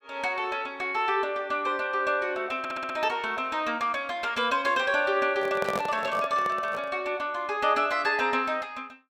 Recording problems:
audio stuttering; at 2.5 s
handling noise; from 5.5 to 7 s; peak 0 dB vs average level

